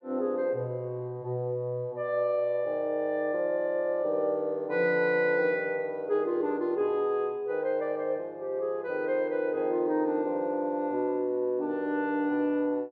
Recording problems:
none

